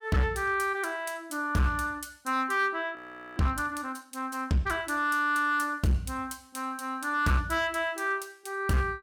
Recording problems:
distortion; hard clipping, uneven, signal-to-distortion ratio 11 dB
audio freezing; at 3 s

